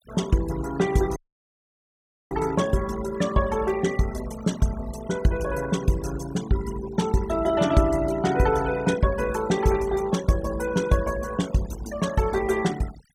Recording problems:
denoising artefacts; signal-to-artefact ratio 15 dB
dropout; at 1 s for 1 s

